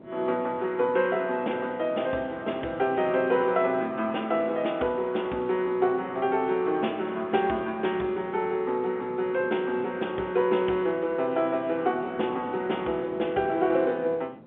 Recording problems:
phone line; 240 Hz to 3.4 kHz, G.711
wind on the microphone; below 490 Hz, SNR 19 dB

